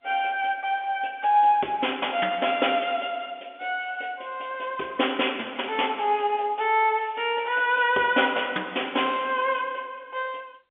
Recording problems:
telephone audio; 300 Hz to 3.5 kHz, G.711

